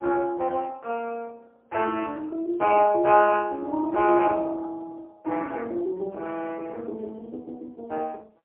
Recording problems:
phone line; 300 Hz to 2.7 kHz, AMR-NB, then MP3

